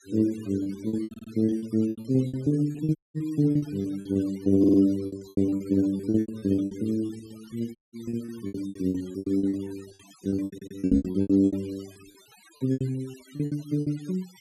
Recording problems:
noise reduction artefacts; signal-to-artefact ratio 24 dB
packet loss; 22% of the sound replaced, filled with repeated pitch periods
audio stuttering; at 1 s, at 4.5 s and at 10 s
audio cutting out; at 3 s and at 8 s
knock on the microphone; at 11 s; peak +5 dB vs average level

